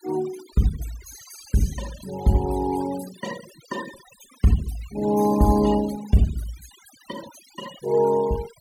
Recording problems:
denoising artefacts; signal-to-artefact ratio 16 dB

